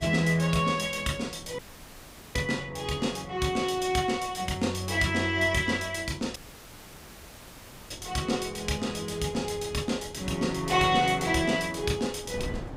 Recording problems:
wind on the microphone; below 380 Hz, SNR 19 dB
dropout; at 1.5 s for 1 s and at 6.5 s for 1.5 s

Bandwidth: 15.5 kHz